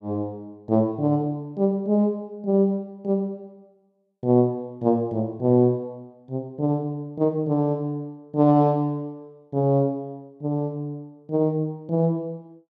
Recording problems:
none

